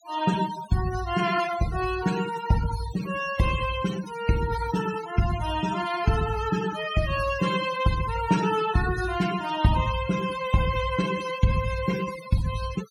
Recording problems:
noise reduction artefacts; signal-to-artefact ratio 11 dB

